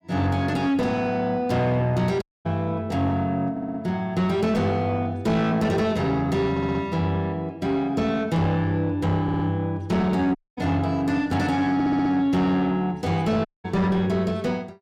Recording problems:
distorted audio; soft clipping, signal-to-distortion ratio 10 dB
audio cutting out; at 2 s, at 10 s and at 13 s
stutter; 4 times, first at 3.5 s

